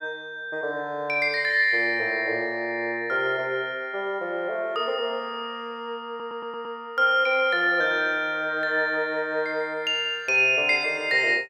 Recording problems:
stutter; at 6 s

